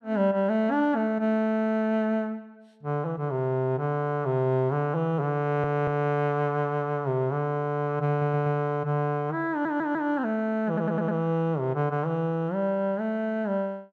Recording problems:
audio stuttering; 4 times, first at 5.5 s

